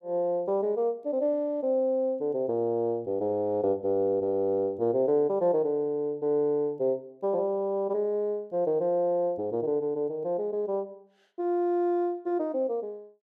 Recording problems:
none

